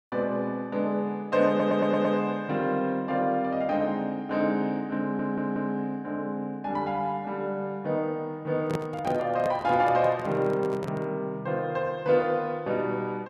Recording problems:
stutter; at 1.5 s and at 5 s
microphone handling noise; from 8.5 to 11 s; peak -1 dB vs average level

